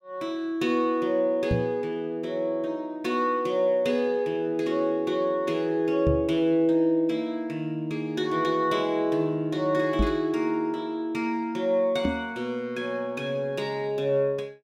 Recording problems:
knock on the microphone; 4 times, first at 1.5 s; peak +4 dB vs average level

